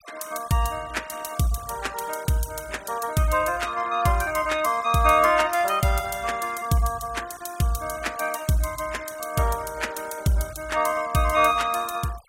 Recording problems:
denoising artefacts; signal-to-artefact ratio 20 dB

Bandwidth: 16 kHz